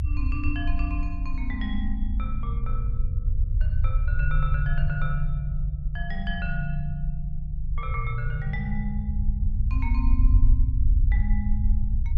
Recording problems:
rumble; below 62 Hz, strongest tone 22 Hz, SNR -6 dB

